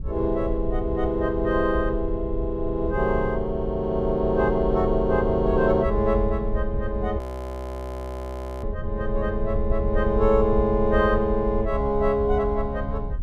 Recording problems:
wind noise; below 70 Hz, SNR 7 dB
audio freezing; at 7 s for 1.5 s

